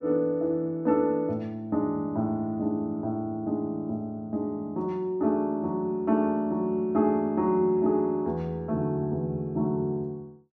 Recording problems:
none

